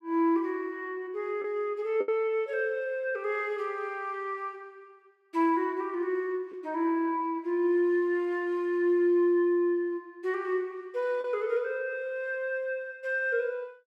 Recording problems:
packet loss; 1% of the sound replaced, filled with the last packet

